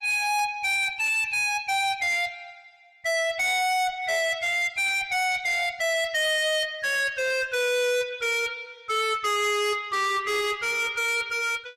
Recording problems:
codec artefacts; Opus, log-spectral distance 3 dB, nothing above 14.6 kHz
distortion; hard clipping, uneven, signal-to-distortion ratio 6 dB

